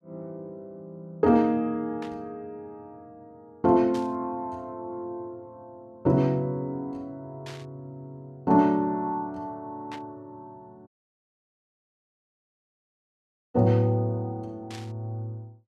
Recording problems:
static burst; 5 times, first at 2 s; peak -12 dB vs average level
audio cutting out; at 11 s for 2.5 s

